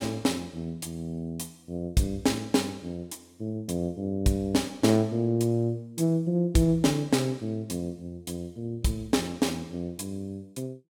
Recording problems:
none

